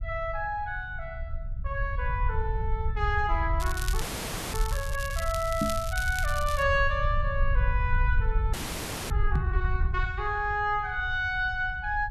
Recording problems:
rumble; below 72 Hz, SNR 2 dB
crackling; from 3.5 to 6.5 s; loose cable, SNR 10 dB
audio freezing; at 4 s for 0.5 s and at 8.5 s for 0.5 s
knock on the microphone; at 5.5 s and at 9.5 s; peak +5 dB vs average level

